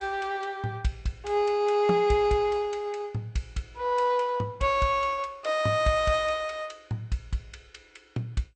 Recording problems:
codec artefacts; MP2, log-spectral distance 2 dB, nothing above 8.2 kHz

